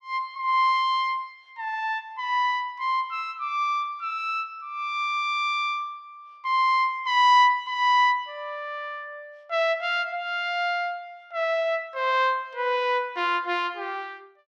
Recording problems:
none

